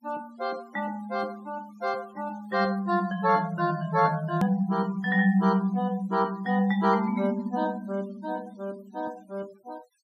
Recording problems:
noise reduction artefacts; signal-to-artefact ratio 25 dB
click at an edit; at 4.5 s

